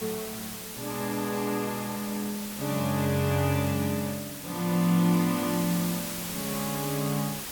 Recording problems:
background hiss; slope -1 dB per octave, SNR 7 dB

